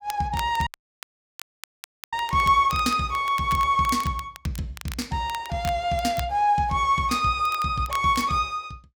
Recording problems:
crackling; vinyl, SNR 18 dB
dropout; at 0.5 s for 1.5 s

